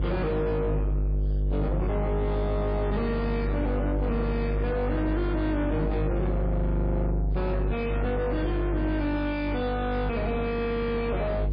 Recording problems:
lossy compression; MP3, log-spectral distance 2 dB, nothing above 4.6 kHz
distorted audio; soft clipping, signal-to-distortion ratio 6 dB
hum; 50 Hz, harmonics up to 450 Hz, SNR 0 dB

